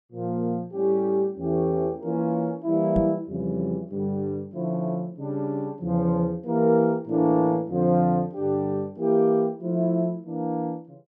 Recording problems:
microphone bump; at 3 s; peak 0 dB vs average level

